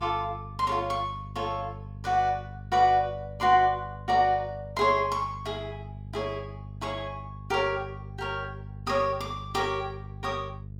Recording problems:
hum; 50 Hz, harmonics up to 450 Hz, SNR 13 dB

